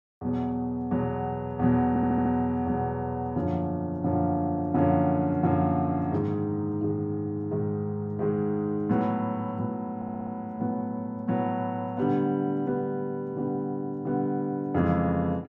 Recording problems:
stutter; at 2 s and at 10 s

